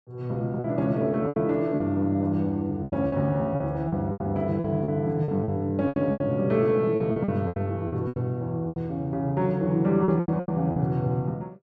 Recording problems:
packet loss; 12% of the sound replaced, filled with repeated pitch periods

